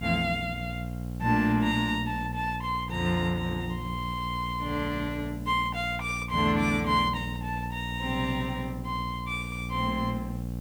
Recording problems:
mains hum; 60 Hz, harmonics up to 780 Hz, SNR 7 dB
hiss; slope +3 dB per octave, SNR 25 dB

